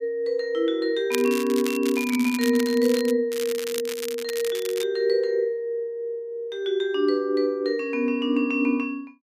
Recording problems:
crackle; from 1 to 3 s and from 3.5 to 5 s; loose cable, SNR 11 dB

